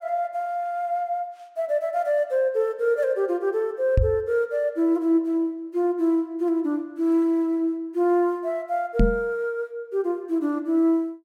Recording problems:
knock on the microphone; at 4 s and at 9 s; peak +6 dB vs average level

